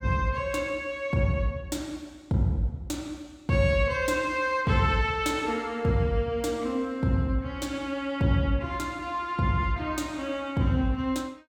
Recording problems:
none

